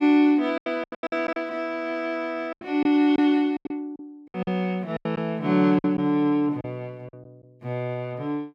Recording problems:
packet loss; 11% of the sound replaced, filled with silence

